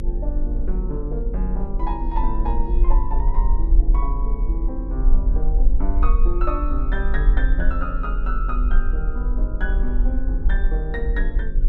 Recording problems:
hum; 50 Hz, harmonics up to 550 Hz, SNR 6 dB
rumble; below 42 Hz, SNR -7 dB

